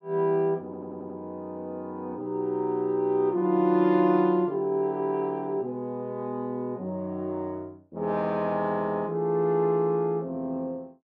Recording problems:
audio stuttering; at 0.5 s

